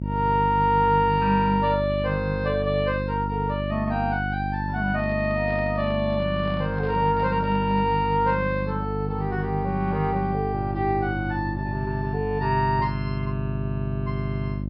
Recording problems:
low-pass filter; nothing above 5.5 kHz
mains hum; 50 Hz, harmonics up to 600 Hz, SNR 4 dB
handling noise; from 5 to 8 s; peak -12 dB vs average level

